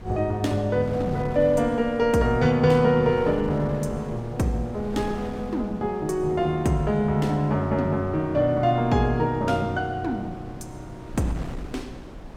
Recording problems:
wind noise; below 400 Hz, SNR 16 dB

